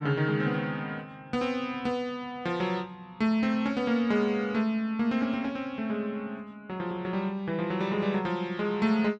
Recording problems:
none

